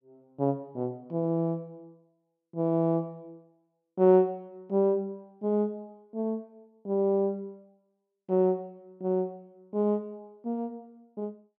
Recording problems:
none

